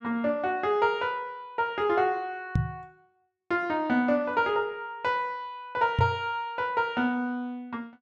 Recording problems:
knock on the microphone; at 2.5 s and at 6 s; peak +6 dB vs average level

